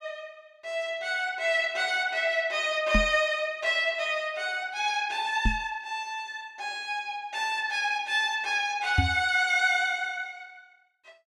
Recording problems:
knock on the microphone; at 3 s, at 5.5 s and at 9 s; peak +6 dB vs average level

